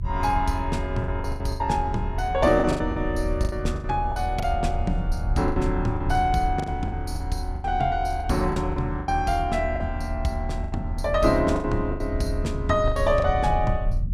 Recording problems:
low-frequency rumble; below 78 Hz, strongest tone 36 Hz, SNR 5 dB
packet loss; 11% of the sound replaced, filled with the last packet

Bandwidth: 15.5 kHz